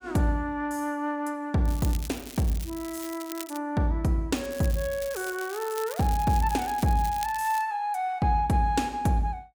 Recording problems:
crackling; from 1.5 to 3.5 s and from 4.5 to 7.5 s; loose cable, SNR 14 dB

